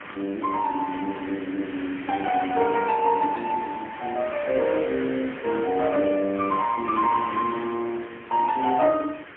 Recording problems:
phone line; 220 Hz to 2.3 kHz, AMR-NB, then MP3
background hiss; SNR 14 dB

